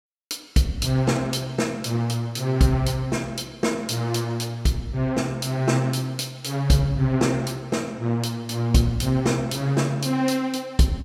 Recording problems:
none

